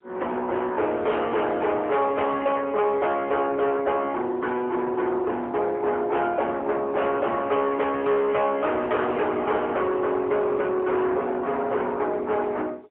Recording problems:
phone line; 410 Hz to 2.8 kHz, AMR-NB, then MP3
distortion; soft clipping, signal-to-distortion ratio 8 dB

